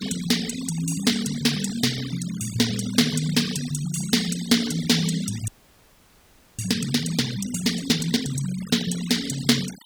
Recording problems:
denoising artefacts; signal-to-artefact ratio 13 dB
frozen audio; at 5.5 s for 1 s

